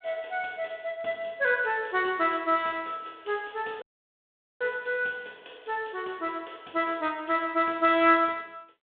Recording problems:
phone line; 260 Hz to 3.6 kHz, G.726
dropout; at 4 s for 1 s

